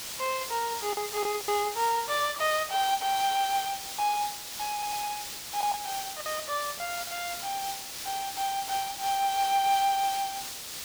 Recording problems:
background hiss; slope +1 dB per octave, SNR 6 dB
packet loss; 4% of the sound replaced, filled with the last packet
audio stuttering; at 4.5 s

